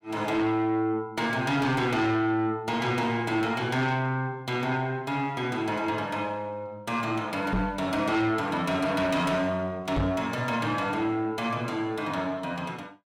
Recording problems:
distorted audio; soft clipping, signal-to-distortion ratio 11 dB
microphone bump; at 7.5 s and at 10 s; peak +4 dB vs average level

